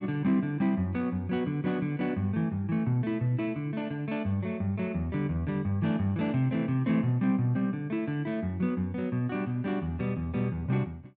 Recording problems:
none

